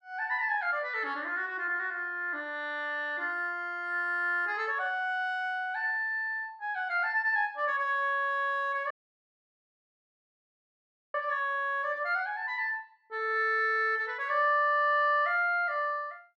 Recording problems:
dropout; at 9 s for 2 s

